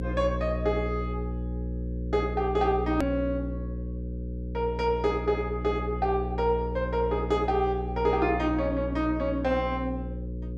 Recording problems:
hum; 60 Hz, harmonics up to 540 Hz, SNR 6 dB
click at an edit; at 3 s

